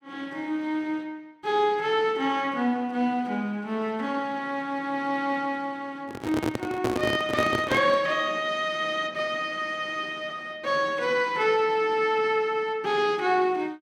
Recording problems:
microphone handling noise; from 6 to 8 s; peak +2 dB vs average level

